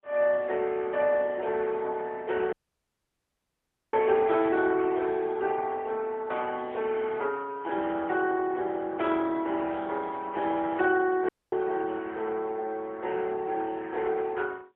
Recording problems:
phone line; 280 Hz to 3.4 kHz, AMR-NB, then MP3
audio cutting out; at 2.5 s for 1.5 s and at 11 s

